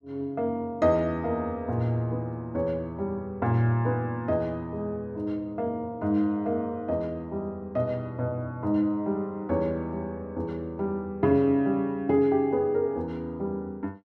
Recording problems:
none

